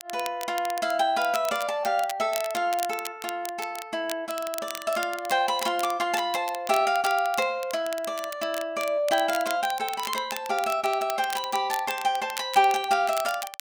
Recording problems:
crackle; vinyl, SNR 12 dB

